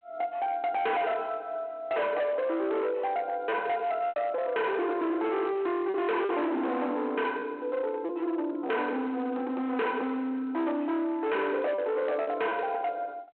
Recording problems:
telephone audio; 220 Hz to 3.5 kHz, G.726
distortion; hard clipping, signal-to-distortion ratio 6 dB
lost packets; 4% of the sound replaced, filled with repeated pitch periods

